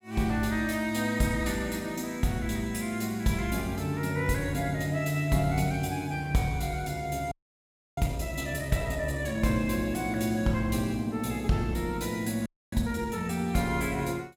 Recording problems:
frozen audio; at 7.5 s for 0.5 s and at 12 s

